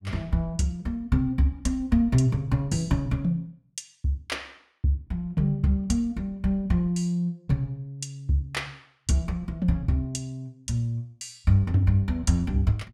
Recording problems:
none

